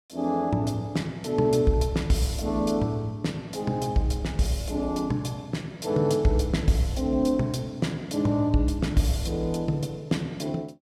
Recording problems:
none

